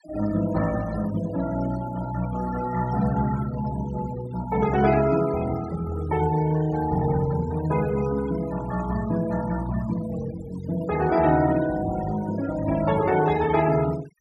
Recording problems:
noise reduction artefacts; signal-to-artefact ratio 15 dB

